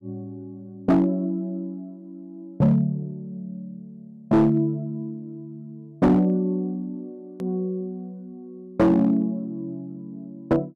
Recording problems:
distortion; hard clipping, signal-to-distortion ratio 10 dB
click at an edit; at 7.5 s

